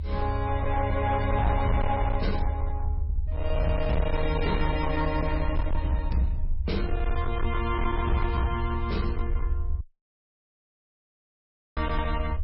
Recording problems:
lossy codec; MP3, log-spectral distance 2 dB, nothing above 5.2 kHz
distorted audio; hard clipping, uneven, signal-to-distortion ratio 11 dB
low-frequency rumble; below 74 Hz, SNR 2 dB
dropout; at 10 s for 2 s

